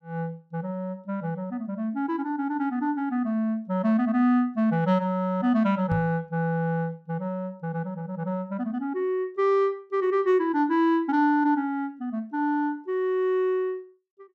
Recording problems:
knock on the microphone; at 6 s; peak -1 dB vs average level

